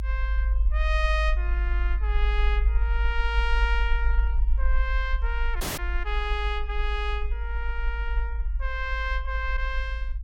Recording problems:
rumble; below 52 Hz, strongest tone 52 Hz, SNR -4 dB
dropout; at 5.5 s

